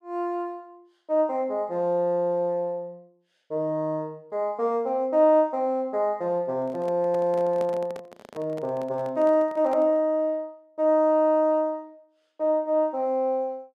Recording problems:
handling noise; from 6.5 to 10 s; peak -10 dB vs average level

